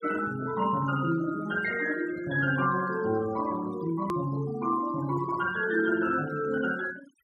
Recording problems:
noise reduction artefacts; signal-to-artefact ratio 17 dB
edit click; at 4 s

